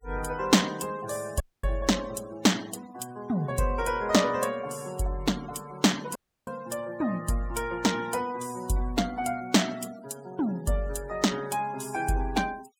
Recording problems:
denoising artefacts; signal-to-artefact ratio 19 dB
audio cutting out; at 1.5 s and at 6 s

